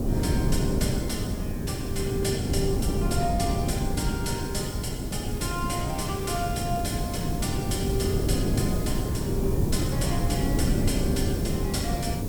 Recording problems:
background hiss; SNR 11 dB
wind noise; below 260 Hz, SNR -4 dB
crackling; from 5 to 7.5 s; loose cable, SNR 22 dB

